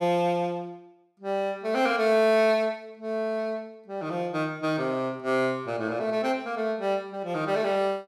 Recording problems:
none

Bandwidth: 14.5 kHz